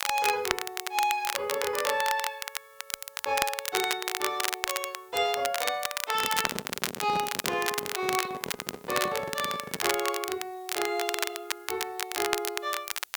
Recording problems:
hiss; SNR 25 dB
crackle; vinyl, SNR 1 dB
handling noise; from 6 to 10 s; peak 0 dB vs average level

